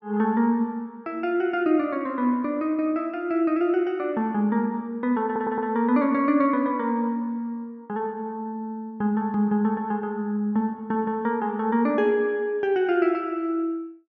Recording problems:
stutter; at 5.5 s

